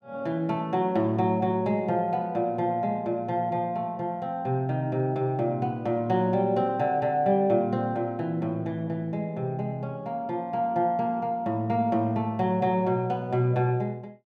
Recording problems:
none

